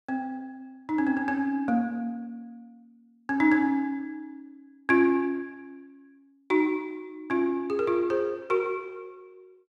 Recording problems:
none

